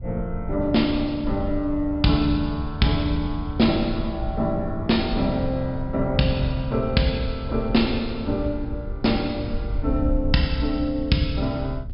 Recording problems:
low-pass filter; nothing above 5.5 kHz
wind noise; below 78 Hz, SNR 9 dB

